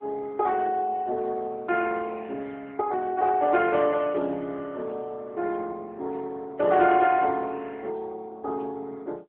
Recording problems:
telephone audio; 300 Hz to 3.9 kHz, AMR-NB

